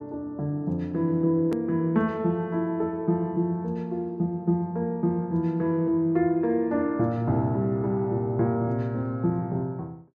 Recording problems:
hard cut with a click; at 1.5 s

